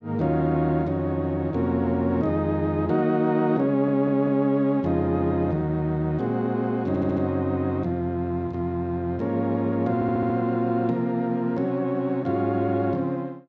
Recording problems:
stutter; at 3.5 s, at 7 s and at 10 s

